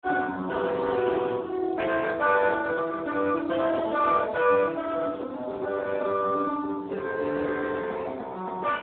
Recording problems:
telephone audio; 220 Hz to 2.1 kHz, Speex

